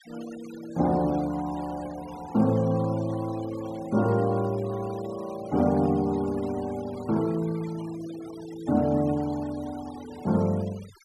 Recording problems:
denoising artefacts; signal-to-artefact ratio 20 dB

